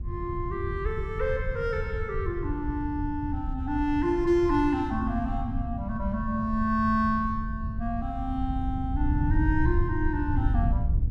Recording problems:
wind on the microphone; below 98 Hz, SNR 3 dB

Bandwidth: 13 kHz